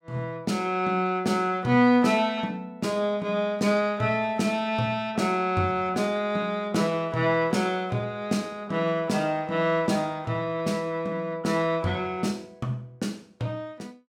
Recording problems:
none

